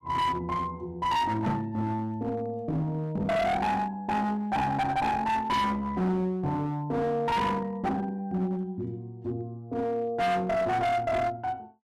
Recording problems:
distorted audio; hard clipping, uneven, signal-to-distortion ratio 7 dB
microphone bump; at 1.5 s; peak +4 dB vs average level

